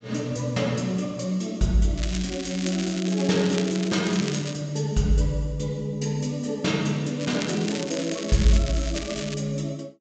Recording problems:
treble cut off; nothing above 8 kHz
crackling; from 2 to 4.5 s and from 7 to 9.5 s; loose cable, SNR 10 dB

